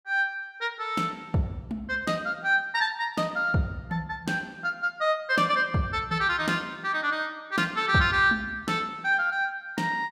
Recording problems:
none

